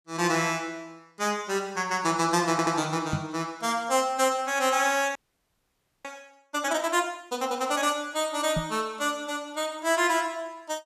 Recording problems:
stutter; at 2.5 s
microphone bump; at 3 s and at 8.5 s; peak +2 dB vs average level
frozen audio; at 5 s for 1 s

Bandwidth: 14.5 kHz